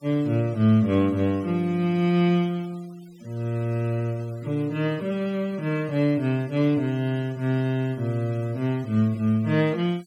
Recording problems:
denoising artefacts; signal-to-artefact ratio 27 dB

